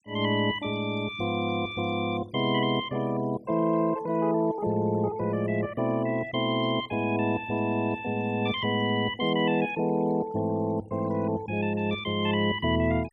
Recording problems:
denoising artefacts; signal-to-artefact ratio 22 dB

